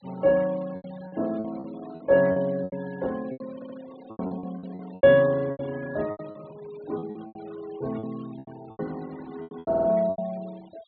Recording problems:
low-pass filter; nothing above 4.3 kHz
denoising artefacts; signal-to-artefact ratio 23 dB
lost packets; 15% of the sound replaced, filled with repeated pitch periods
stutter; at 3.5 s and at 9.5 s

